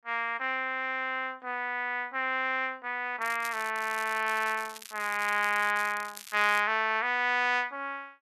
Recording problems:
crackle; from 3 to 6.5 s; loose cable, SNR 16 dB

